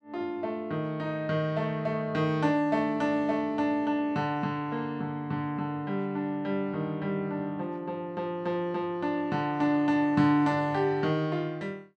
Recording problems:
none

